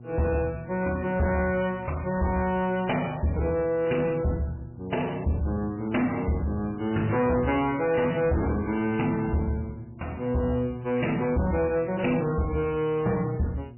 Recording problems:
codec artefacts; MP3, log-spectral distance 3 dB, nothing above 3 kHz
distortion; soft clipping, signal-to-distortion ratio 11 dB
mains hum; 60 Hz, harmonics up to 720 Hz, SNR 19 dB

